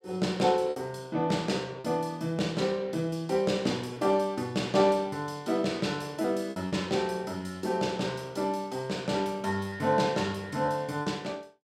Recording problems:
lost packets; 3% of the sound replaced, filled with repeated pitch periods

